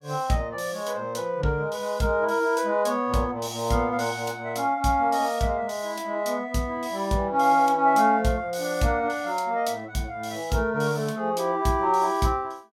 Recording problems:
none

